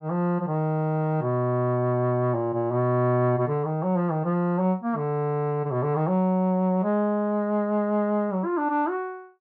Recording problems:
none

